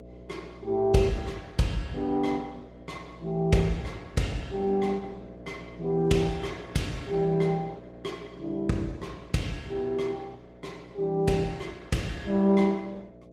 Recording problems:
lossy compression; Opus, log-spectral distance 3 dB, nothing above 15.5 kHz
electrical hum; 60 Hz, harmonics up to 660 Hz, SNR 18 dB

